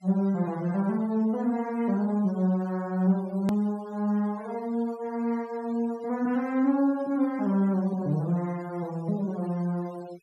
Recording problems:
denoising artefacts; signal-to-artefact ratio 23 dB
click at an edit; at 3.5 s

